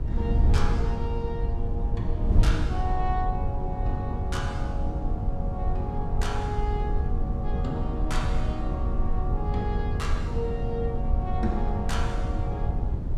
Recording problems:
wind on the microphone; below 94 Hz, SNR -5 dB

